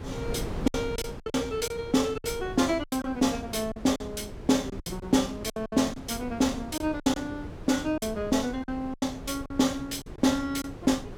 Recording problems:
wind on the microphone; below 400 Hz, SNR 12 dB
lost packets; 10% of the sound replaced, filled with silence

